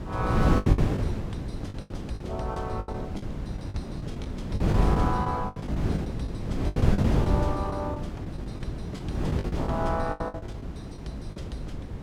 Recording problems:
wind on the microphone; below 260 Hz, SNR -6 dB
lost packets; 15% of the sound replaced, filled with the last packet

